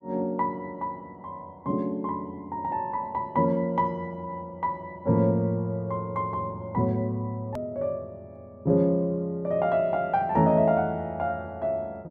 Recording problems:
click at an edit; at 7.5 s

